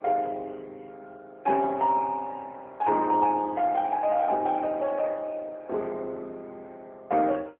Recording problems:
phone line; 280 Hz to 2.8 kHz, AMR-NB

